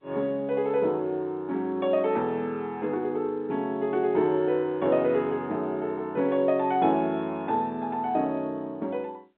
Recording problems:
phone line; 150 Hz to 3.8 kHz, G.711

